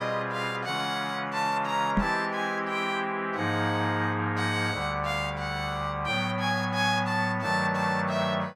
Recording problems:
knock on the microphone; at 2 s; peak +5 dB vs average level

